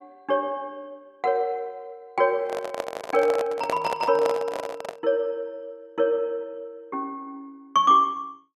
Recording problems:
microphone handling noise; from 2.5 to 5 s; peak 0 dB vs average level

